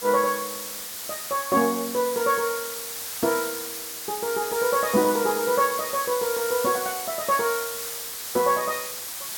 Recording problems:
hiss; slope +1 dB per octave, SNR 6 dB

